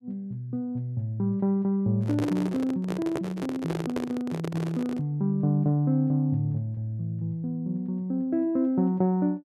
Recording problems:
handling noise; from 2 to 5 s; peak +1 dB vs average level

